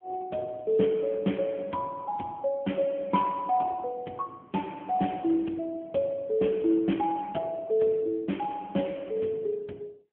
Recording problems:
phone line; 130 Hz to 3.3 kHz, AMR-NB

